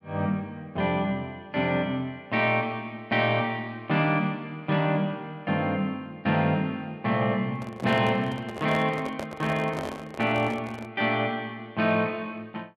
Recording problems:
microphone handling noise; from 7.5 to 11 s; peak -4 dB vs average level

